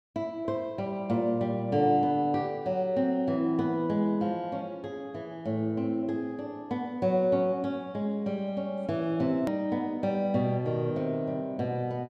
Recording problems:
hard cut with a click; at 9.5 s

